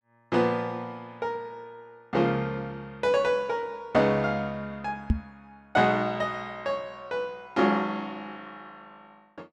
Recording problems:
microphone thump; at 5 s; peak +7 dB vs average level

